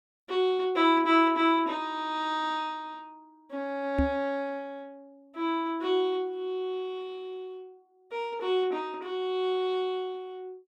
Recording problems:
microphone thump; at 4 s; peak +4 dB vs average level

